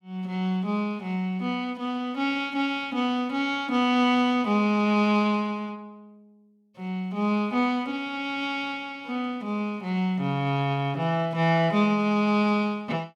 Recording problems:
none

